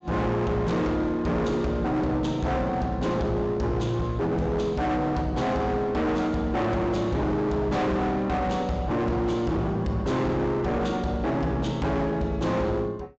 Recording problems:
treble missing; nothing above 8 kHz
distortion; hard clipping, uneven, signal-to-distortion ratio 8 dB

